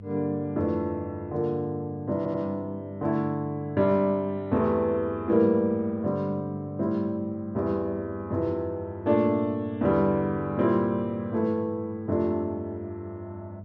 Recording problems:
electrical hum; 50 Hz, harmonics up to 500 Hz, SNR 15 dB
stutter; at 2 s

